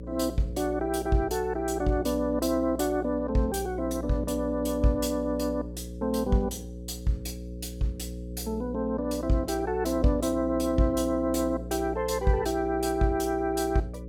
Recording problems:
hum; 60 Hz, harmonics up to 540 Hz, SNR 11 dB

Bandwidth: 18 kHz